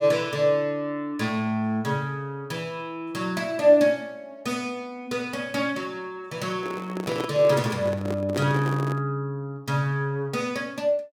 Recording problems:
microphone handling noise; from 6.5 to 9 s; peak 0 dB vs average level

